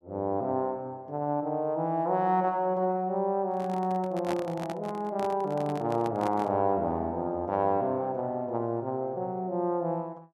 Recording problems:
microphone handling noise; from 3.5 to 6.5 s; peak -2 dB vs average level

